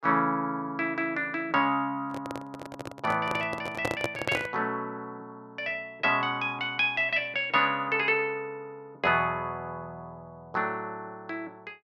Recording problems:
microphone handling noise; from 2 to 4.5 s; peak +2 dB vs average level

